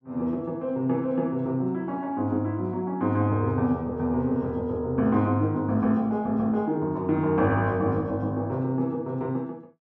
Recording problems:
none

